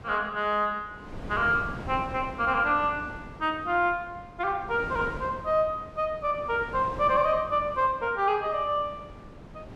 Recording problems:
wind on the microphone; below 560 Hz, SNR 15 dB

